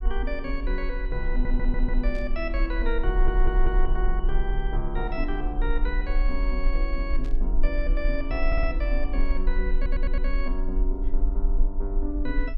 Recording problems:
rumble; below 38 Hz, strongest tone 20 Hz, SNR -4 dB
audio stuttering; 4 times, first at 1.5 s
static burst; at 2 s and at 7 s; peak -12 dB vs average level

